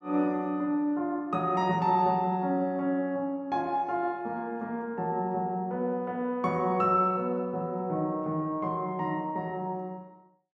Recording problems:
none

